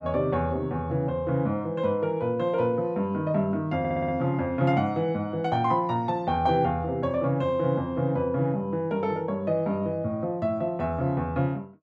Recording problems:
audio stuttering; at 4 s

